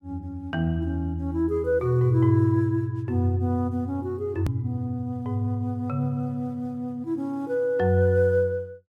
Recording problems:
edit click; at 4.5 s

